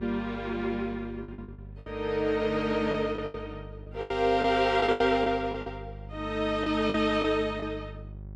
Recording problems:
hum; 50 Hz, harmonics up to 550 Hz, SNR 16 dB
packet loss; 10% of the sound replaced, filled with the last packet

